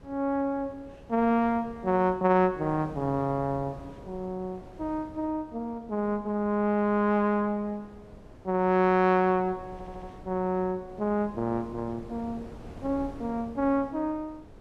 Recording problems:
wind noise; below 480 Hz, SNR 20 dB
audio stuttering; at 9.5 s

